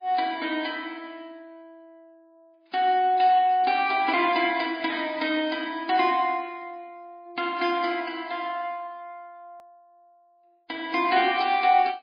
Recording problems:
codec artefacts; MP3, log-spectral distance 2 dB, nothing above 5 kHz
hard cut with a click; at 9.5 s

